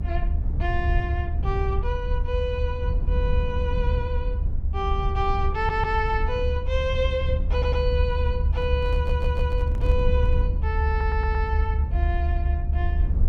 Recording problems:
low-frequency rumble; below 74 Hz, SNR -4 dB
audio stuttering; 4 times, first at 5.5 s
handling noise; from 8.5 to 10 s; peak -9 dB vs average level

